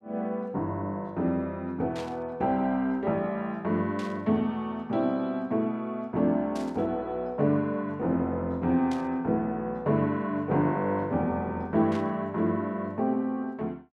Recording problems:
burst of static; 5 times, first at 2 s; peak -10 dB vs average level

